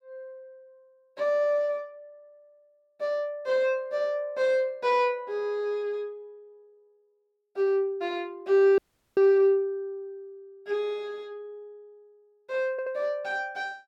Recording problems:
dropout; at 9 s
stutter; at 13 s

